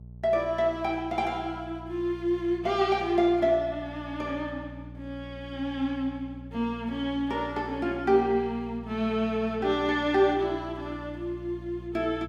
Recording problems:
electrical hum; 60 Hz, harmonics up to 420 Hz, SNR 16 dB

